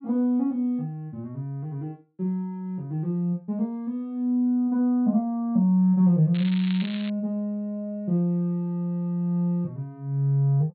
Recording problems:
treble missing; nothing above 4.2 kHz
crackling; at 6.5 s; loose cable, SNR 15 dB

